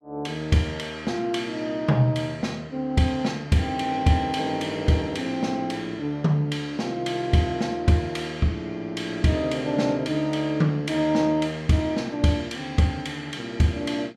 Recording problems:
none

